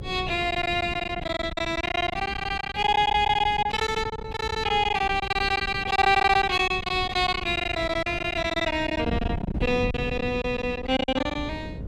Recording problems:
hum; 60 Hz, harmonics up to 540 Hz, SNR 20 dB
wind noise; below 210 Hz, SNR 12 dB
lost packets; 17% of the sound replaced, filled with silence

